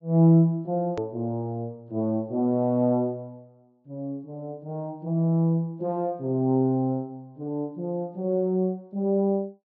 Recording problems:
low-pass filter; nothing above 7.5 kHz
hard cut with a click; at 1 s

